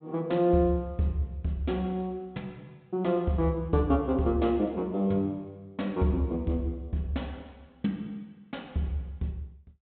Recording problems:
low-pass filter; nothing above 4 kHz

